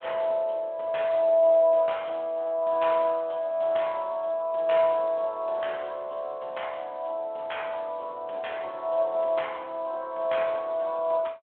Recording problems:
phone line; 320 Hz to 3.5 kHz, Speex

